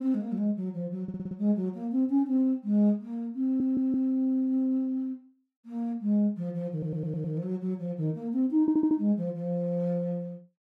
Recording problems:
stutter; 4 times, first at 1 s

